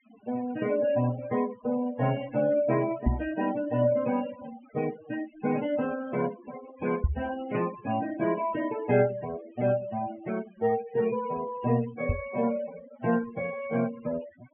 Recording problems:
treble cut off; nothing above 3 kHz
noise reduction artefacts; signal-to-artefact ratio 15 dB
knock on the microphone; at 3 s, at 7 s and at 12 s; peak +7 dB vs average level

